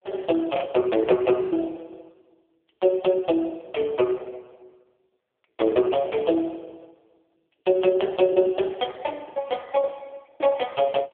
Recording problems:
telephone audio; 280 Hz to 3.4 kHz, AMR-NB
packet loss; 7% of the sound replaced, filled with the last packet

